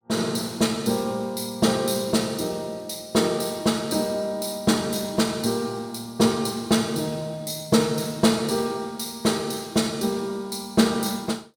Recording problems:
none

